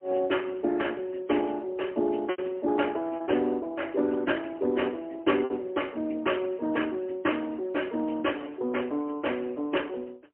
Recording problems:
phone line; 220 Hz to 3.2 kHz, AMR-NB, then MP3
lost packets; 2% of the sound replaced, filled with repeated pitch periods

